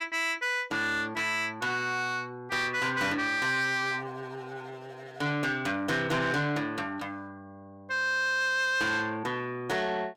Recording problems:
distorted audio; soft clipping, signal-to-distortion ratio 12 dB

